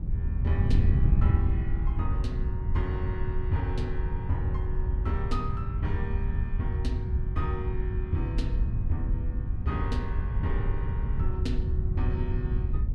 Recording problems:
wind on the microphone; below 96 Hz, SNR -6 dB

